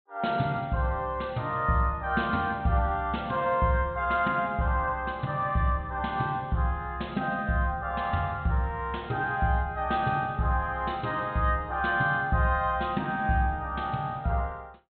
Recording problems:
low-pass filter; nothing above 4 kHz

